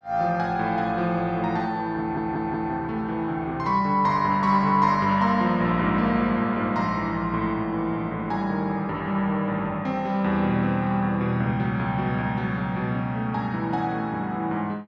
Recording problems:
stutter; at 2 s

